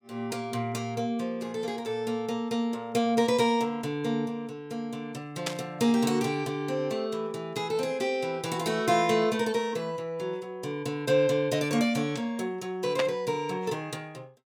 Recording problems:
static burst; at 5.5 s and at 13 s; peak +3 dB vs average level

